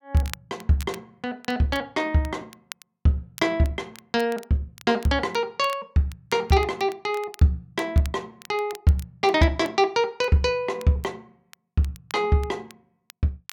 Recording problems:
crackle; vinyl, SNR 22 dB

